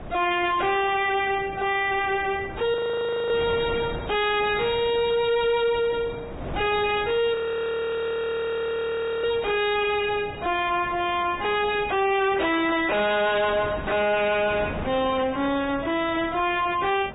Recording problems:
treble missing; nothing above 3.4 kHz
codec artefacts; Vorbis, log-spectral distance 3 dB
distorted audio; soft clipping, signal-to-distortion ratio 7 dB
wind noise; below 730 Hz, SNR 14 dB
audio freezing; at 2.5 s for 0.5 s and at 7.5 s for 2 s

